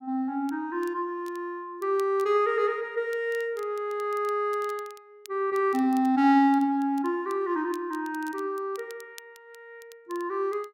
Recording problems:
crackle; vinyl, SNR 26 dB

